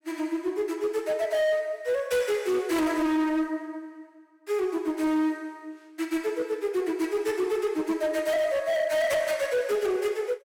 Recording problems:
distorted audio; hard clipping, signal-to-distortion ratio 11 dB

